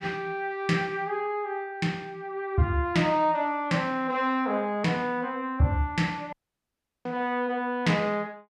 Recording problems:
dropout; at 6.5 s for 0.5 s

